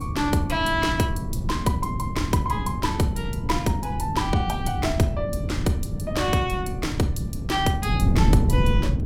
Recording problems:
wind noise; below 170 Hz, SNR 2 dB

